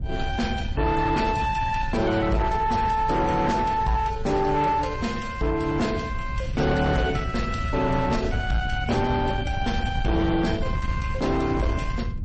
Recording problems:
lossy codec; MP3, then MP3, log-spectral distance 2 dB, nothing above 8.2 kHz
distorted audio; soft clipping, signal-to-distortion ratio 11 dB
wind on the microphone; below 120 Hz, SNR 7 dB

